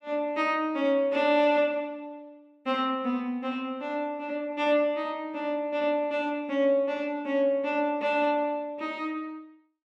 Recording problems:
none

